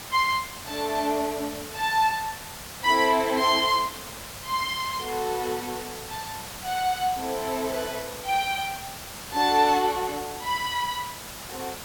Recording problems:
background hiss; slope -1 dB per octave, SNR 11 dB

